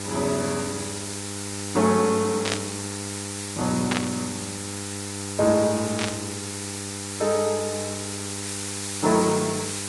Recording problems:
lossy codec; Vorbis, log-spectral distance 18 dB
hum; 50 Hz, harmonics up to 1.9 kHz, SNR 10 dB
hiss; slope +3 dB per octave, SNR 7 dB
static burst; at 2.5 s, at 4 s and at 6 s; peak +4 dB vs average level

